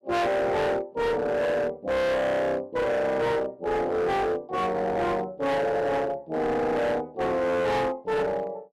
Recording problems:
distortion; hard clipping, uneven, signal-to-distortion ratio 7 dB

